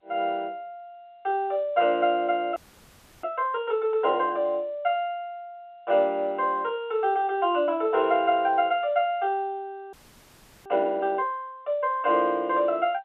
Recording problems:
phone line; 340 Hz to 3.5 kHz, G.711
audio freezing; at 2.5 s for 0.5 s and at 10 s for 0.5 s

